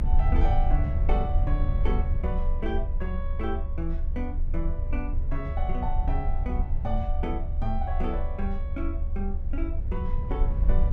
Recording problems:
rumble; below 70 Hz, strongest tone 24 Hz, SNR -6 dB

